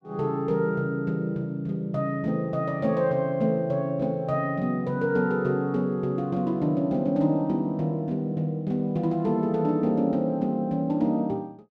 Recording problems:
none

